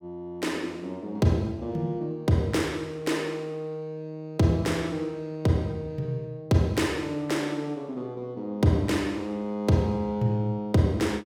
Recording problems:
none

